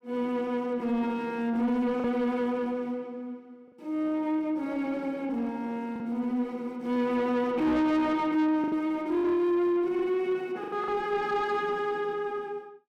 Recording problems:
distorted audio; soft clipping, signal-to-distortion ratio 11 dB
packet loss; 3% of the sound replaced, filled with the last packet

